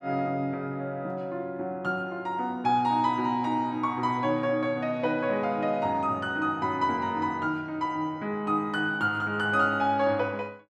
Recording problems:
none

